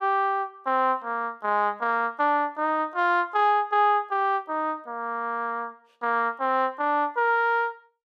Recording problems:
none

